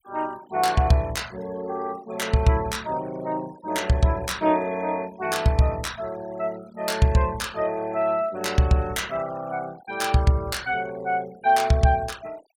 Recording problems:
noise reduction artefacts; signal-to-artefact ratio 22 dB

